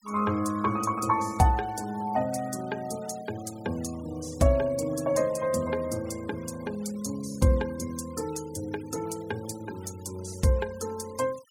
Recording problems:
noise reduction artefacts; signal-to-artefact ratio 20 dB

